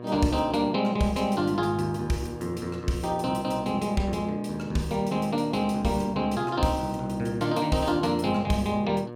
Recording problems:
hum; 60 Hz, harmonics up to 1.7 kHz, SNR 14 dB

